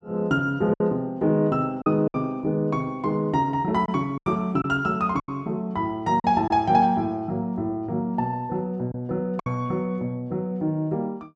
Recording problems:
packet loss; 4% of the sound replaced, filled with silence

